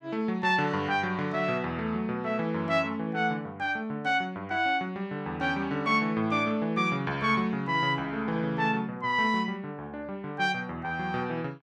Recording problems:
none

